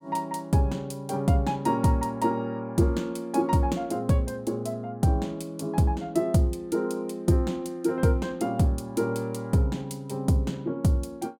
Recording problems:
none

